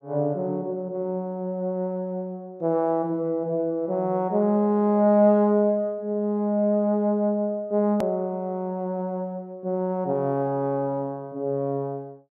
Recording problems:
edit click; at 8 s

